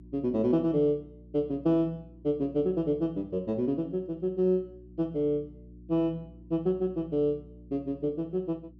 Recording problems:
hum; 60 Hz, harmonics up to 360 Hz, SNR 21 dB

